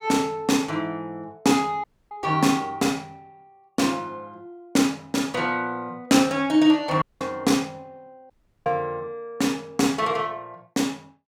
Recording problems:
audio cutting out; at 2 s, at 7 s and at 8.5 s

